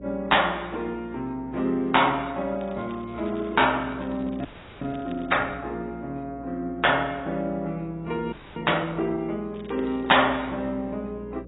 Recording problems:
codec artefacts; AAC, log-spectral distance 4 dB, nothing above 3.8 kHz
mains hum; 60 Hz, harmonics up to 540 Hz, SNR 19 dB
crackling; from 2.5 to 5.5 s and at 9.5 s; loose cable, SNR 27 dB
audio freezing; at 4.5 s and at 8.5 s

